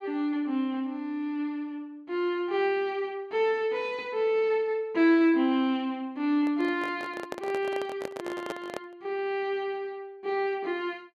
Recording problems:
microphone handling noise; from 6.5 to 9 s; peak -3 dB vs average level

